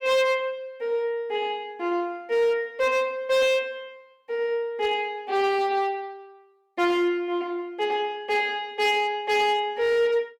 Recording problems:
distortion; hard clipping, signal-to-distortion ratio 11 dB

